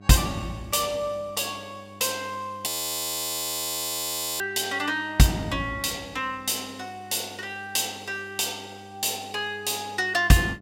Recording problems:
hum; 50 Hz, harmonics up to 1.1 kHz, SNR 22 dB
audio freezing; at 2.5 s for 1.5 s

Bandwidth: 16 kHz